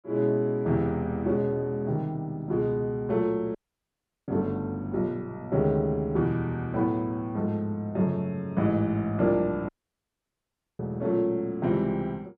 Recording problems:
audio cutting out; at 3.5 s for 0.5 s and at 9.5 s for 1 s

